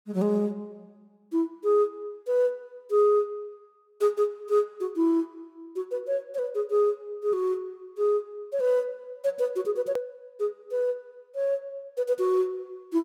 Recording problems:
click at an edit; at 10 s

